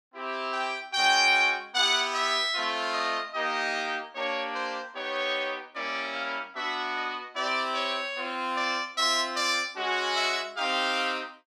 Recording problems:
none

